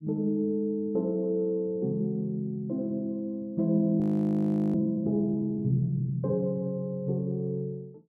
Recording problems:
frozen audio; at 4 s for 0.5 s

